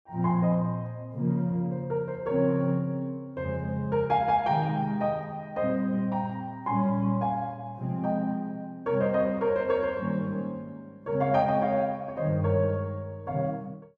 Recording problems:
none

